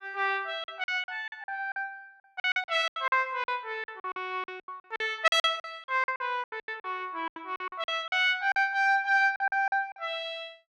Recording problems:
lost packets; 17% of the sound replaced, filled with silence

